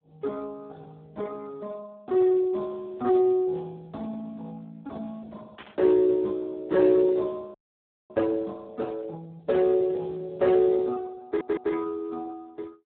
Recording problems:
telephone audio; 280 Hz to 2.2 kHz, Speex
static burst; at 5.5 s and at 9.5 s; peak -15 dB vs average level
frozen audio; at 7.5 s for 0.5 s
audio stuttering; at 11 s

